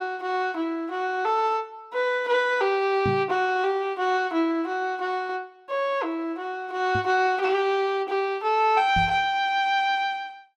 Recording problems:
microphone thump; at 3 s, at 7 s and at 9 s; peak -1 dB vs average level

